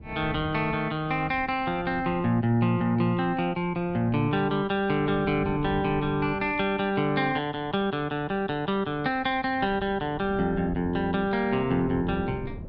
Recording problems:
wind on the microphone; below 240 Hz, SNR 16 dB

